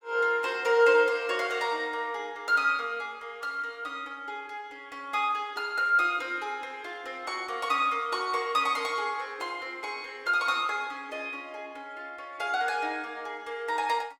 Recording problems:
none

